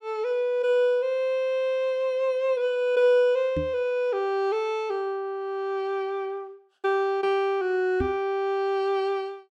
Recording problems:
microphone thump; at 3.5 s and at 8 s; peak -1 dB vs average level

